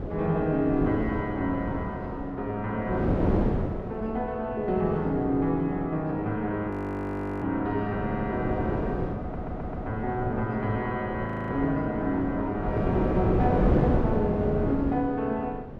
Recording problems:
wind on the microphone; below 430 Hz, SNR 2 dB
audio freezing; at 6.5 s for 0.5 s and at 11 s
stutter; at 8 s and at 9 s

